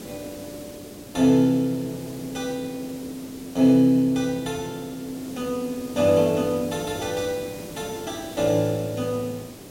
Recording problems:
background hiss; SNR 15 dB

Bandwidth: 16 kHz